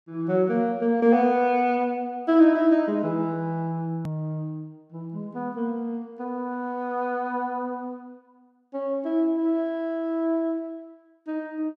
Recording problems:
hard cut with a click; at 4 s

